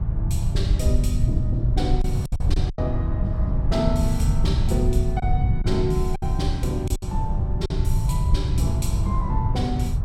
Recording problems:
low-frequency rumble; below 110 Hz, SNR -4 dB
wind noise; below 860 Hz, SNR 16 dB
packet loss; 4% of the sound replaced, filled with silence

